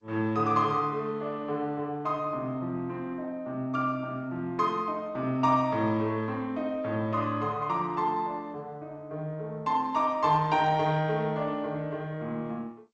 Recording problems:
lossy codec; Opus, then G.722, log-spectral distance 2 dB

